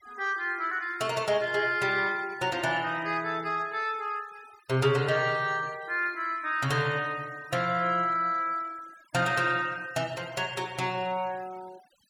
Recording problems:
denoising artefacts; signal-to-artefact ratio 22 dB

